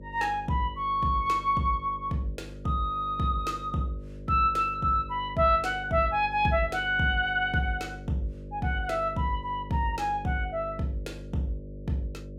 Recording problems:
hum; 50 Hz, harmonics up to 600 Hz, SNR 15 dB

